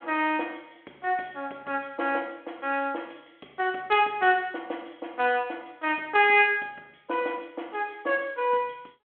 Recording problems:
telephone audio; 240 Hz to 3.3 kHz, G.726

